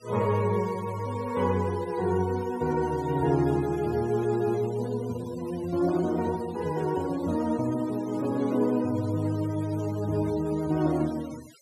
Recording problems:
denoising artefacts; signal-to-artefact ratio 20 dB

